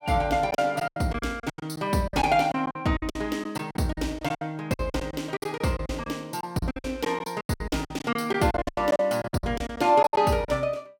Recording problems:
packet loss; 18% of the sound replaced, filled with silence

